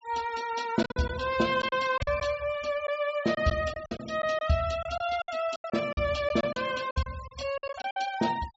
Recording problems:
treble missing; nothing above 8 kHz
denoising artefacts; signal-to-artefact ratio 17 dB
lost packets; 11% of the sound replaced, filled with silence

